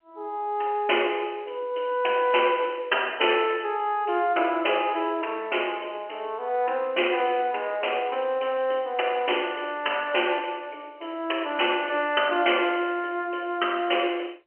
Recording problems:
phone line; 300 Hz to 3.1 kHz, G.711

